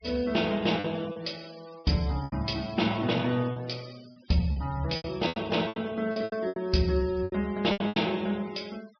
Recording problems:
treble missing; nothing above 5.5 kHz
noise reduction artefacts; signal-to-artefact ratio 21 dB
packet loss; 11% of the sound replaced, filled with repeated pitch periods

